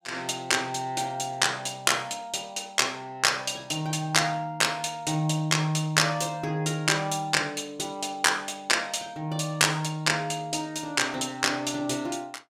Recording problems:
none

